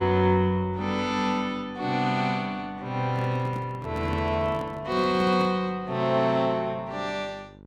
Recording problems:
hum; 50 Hz, harmonics up to 1.1 kHz, SNR 22 dB
microphone handling noise; from 3 to 5.5 s; peak -5 dB vs average level

